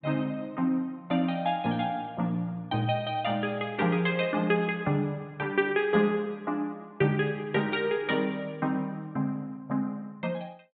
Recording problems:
treble missing; nothing above 4 kHz

